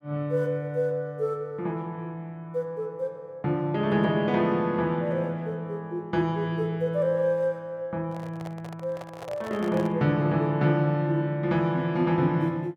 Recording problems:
microphone handling noise; from 8 to 10 s; peak -8 dB vs average level

